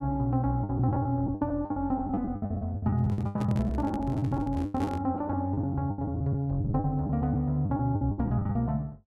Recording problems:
packet loss; 18% of the sound replaced, filled with the last packet
microphone handling noise; from 3 to 5 s; peak -4 dB vs average level

